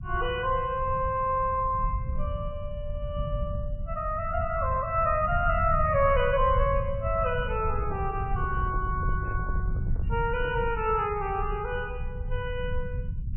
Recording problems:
codec artefacts; MP3, log-spectral distance 2 dB, nothing above 2.4 kHz
rumble; below 94 Hz, SNR 5 dB
handling noise; from 7.5 to 11 s; peak -10 dB vs average level

